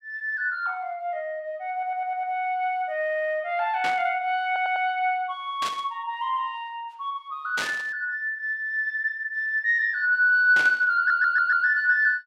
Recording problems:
audio stuttering; 4 times, first at 1.5 s
burst of static; 4 times, first at 4 s; peak -2 dB vs average level

